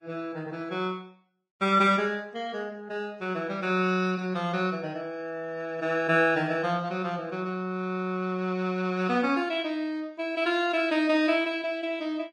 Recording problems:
codec artefacts; Vorbis, log-spectral distance 2 dB, nothing above 10.4 kHz

